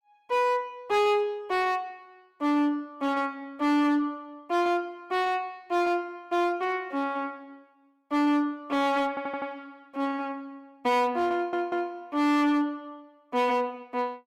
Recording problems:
distorted audio; hard clipping, signal-to-distortion ratio 11 dB
stutter; at 9 s and at 11 s

